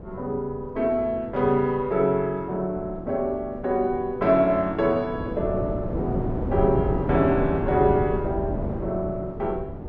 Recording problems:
wind noise; below 360 Hz, SNR 7 dB

